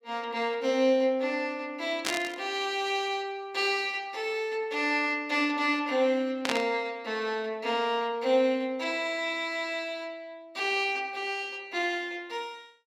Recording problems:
burst of static; at 2 s and at 6.5 s; peak +3 dB vs average level

